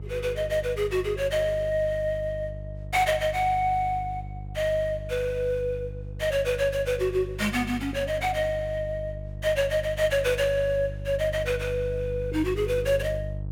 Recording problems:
hum; 50 Hz, harmonics up to 500 Hz, SNR 10 dB

